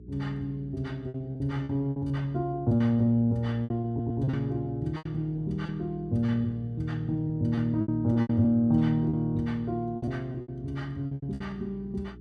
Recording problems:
mains hum; 60 Hz, harmonics up to 420 Hz, SNR 20 dB
packet loss; 11% of the sound replaced, filled with repeated pitch periods
stutter; at 4 s

